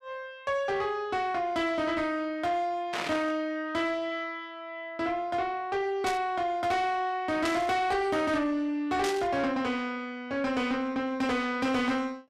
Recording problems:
distortion; soft clipping, signal-to-distortion ratio 10 dB
static burst; 4 times, first at 3 s; peak 0 dB vs average level

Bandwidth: 15 kHz